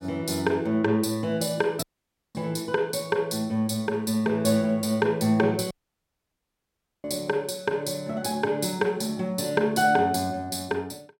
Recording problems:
audio cutting out; at 2 s for 0.5 s and at 5.5 s for 1.5 s

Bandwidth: 16.5 kHz